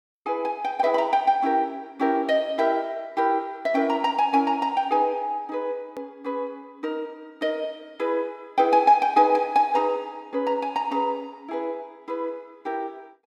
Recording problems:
hard cut with a click; at 6 s

